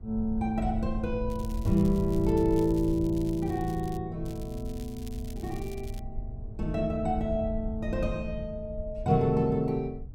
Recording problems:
wind noise; below 78 Hz, SNR 9 dB
crackle; from 1.5 to 4 s and from 4.5 to 6 s; loose cable, SNR 23 dB

